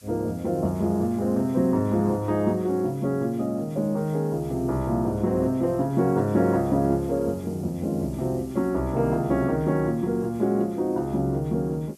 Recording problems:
background hiss; slope +2 dB per octave, SNR 27 dB

